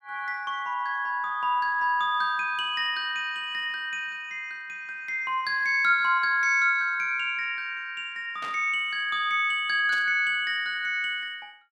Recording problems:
static burst; at 8.5 s and at 10 s; peak -11 dB vs average level

